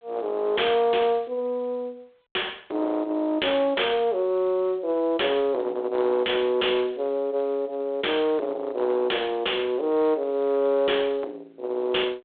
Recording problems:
phone line; 280 Hz to 3.5 kHz, G.726
distorted audio; soft clipping, signal-to-distortion ratio 11 dB

